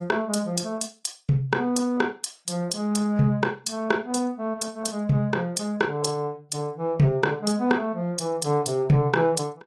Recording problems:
codec artefacts; AAC, log-spectral distance 3 dB

